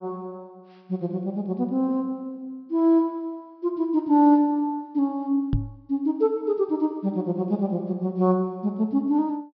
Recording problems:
low-pass filter; nothing above 5.5 kHz
knock on the microphone; at 5.5 s; peak +3 dB vs average level

